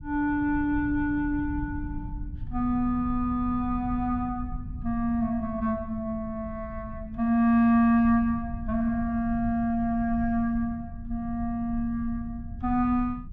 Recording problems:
rumble; below 110 Hz, SNR 12 dB

